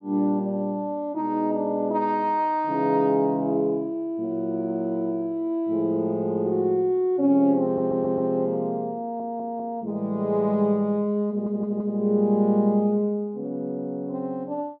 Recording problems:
stutter; at 7.5 s, at 9 s and at 11 s

